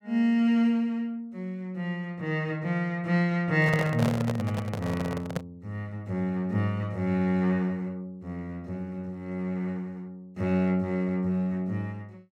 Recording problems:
handling noise; from 3.5 to 5.5 s; peak +2 dB vs average level

